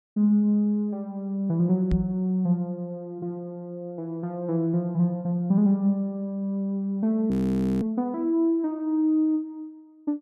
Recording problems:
microphone thump; at 2 s; peak +5 dB vs average level
audio freezing; at 7.5 s for 0.5 s

